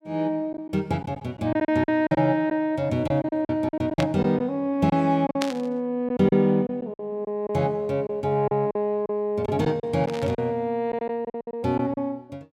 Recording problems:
lost packets; 10% of the sound replaced, filled with silence
static burst; at 4 s, at 5.5 s and at 10 s; peak 0 dB vs average level

